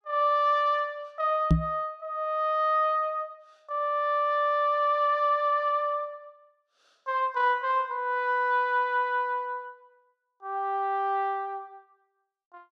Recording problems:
microphone thump; at 1.5 s; peak +8 dB vs average level

